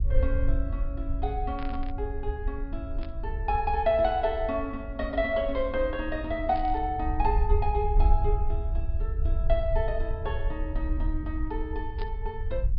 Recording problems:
treble missing; nothing above 5.5 kHz
rumble; below 62 Hz, SNR 2 dB
burst of static; 4 times, first at 1.5 s; peak -10 dB vs average level

